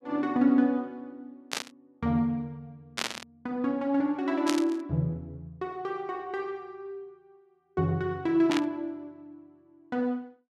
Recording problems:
burst of static; 4 times, first at 1.5 s; peak +3 dB vs average level

